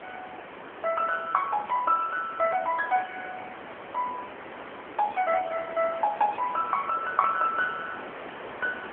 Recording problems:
phone line; 320 Hz to 3.3 kHz, AMR-NB
background hiss; SNR 13 dB

